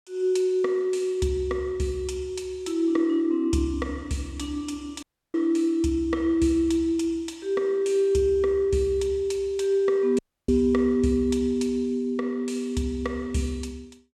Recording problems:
dropout; at 5 s and at 10 s

